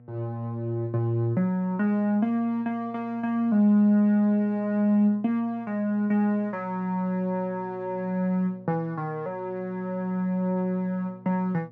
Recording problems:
hum; 60 Hz, harmonics up to 720 Hz, SNR 26 dB

